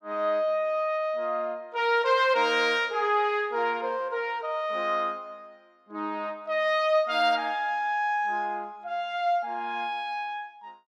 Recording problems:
none

